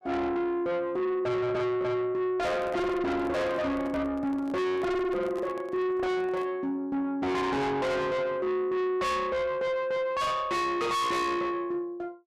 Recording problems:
distortion; soft clipping, signal-to-distortion ratio 6 dB
handling noise; from 2.5 to 6.5 s; peak -8 dB vs average level

